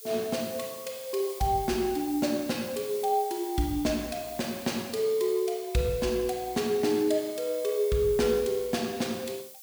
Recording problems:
hiss; SNR 14 dB

